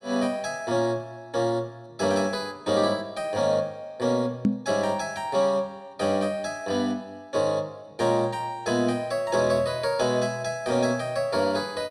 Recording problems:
microphone bump; at 4.5 s; peak +7 dB vs average level

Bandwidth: 13 kHz